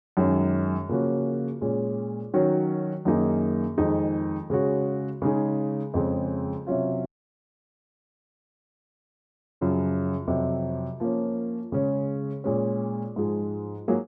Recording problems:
dropout; at 7 s for 2.5 s

